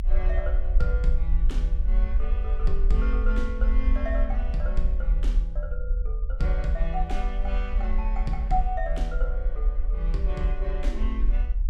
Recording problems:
low-frequency rumble; below 46 Hz, SNR -6 dB

